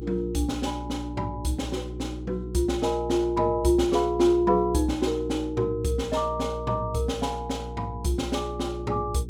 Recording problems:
hum; 60 Hz, harmonics up to 420 Hz, SNR 11 dB

